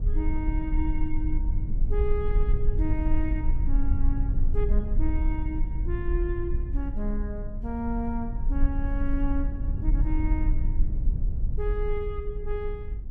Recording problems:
rumble; below 52 Hz, SNR -5 dB

